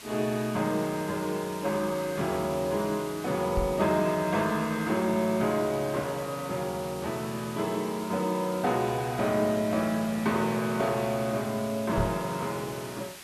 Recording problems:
background hiss; slope 0 dB per octave, SNR 15 dB
microphone bump; at 3.5 s and at 12 s; peak +2 dB vs average level

